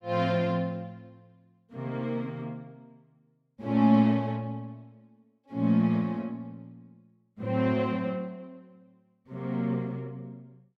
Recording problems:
none

